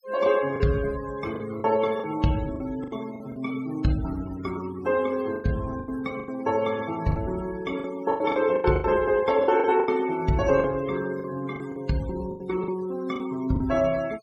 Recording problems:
denoising artefacts; signal-to-artefact ratio 18 dB
packet loss; 10% of the sound replaced, filled with the last packet

